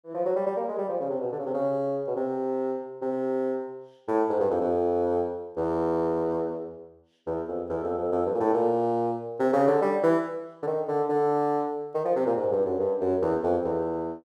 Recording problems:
none

